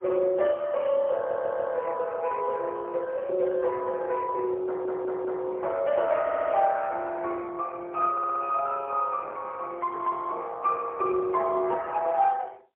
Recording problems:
telephone audio; 320 Hz to 3.2 kHz, AMR-NB, then MP3
stutter; 4 times, first at 1 s

